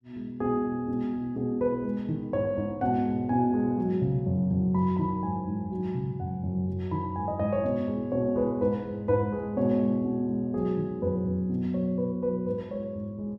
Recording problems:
none

